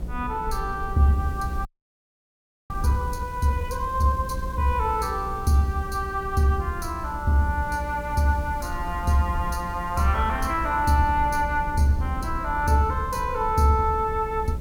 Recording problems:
hum; 60 Hz, harmonics up to 540 Hz, SNR 14 dB
hiss; SNR 27 dB
low-frequency rumble; below 74 Hz, SNR 13 dB
frozen audio; at 1.5 s for 1 s

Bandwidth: 17 kHz